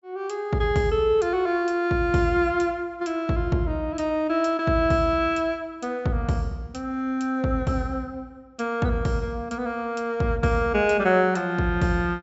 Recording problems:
treble missing; nothing above 8 kHz

